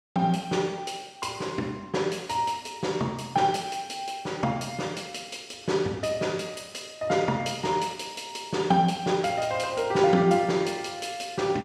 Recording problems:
none

